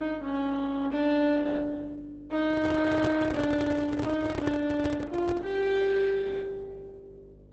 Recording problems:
lossy codec; Opus, log-spectral distance 3 dB, nothing above 7.8 kHz
hum; 50 Hz, harmonics up to 600 Hz, SNR 25 dB
microphone handling noise; from 2.5 to 5.5 s; peak 0 dB vs average level

